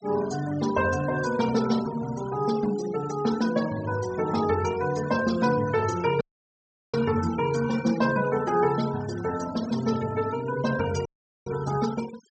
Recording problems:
treble cut off; nothing above 8 kHz
denoising artefacts; signal-to-artefact ratio 15 dB
audio cutting out; at 6 s for 0.5 s and at 11 s

